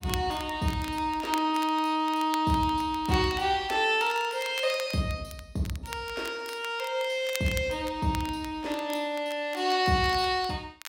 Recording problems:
crackle; vinyl, SNR 16 dB

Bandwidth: 16 kHz